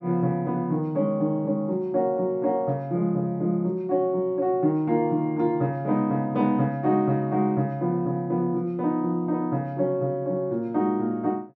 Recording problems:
none

